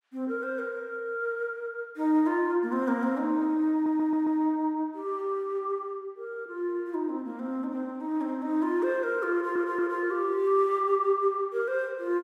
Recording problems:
stutter; at 3.5 s and at 9.5 s

